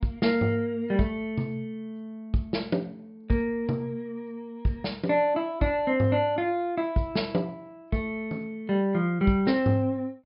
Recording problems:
low-pass filter; nothing above 5.5 kHz

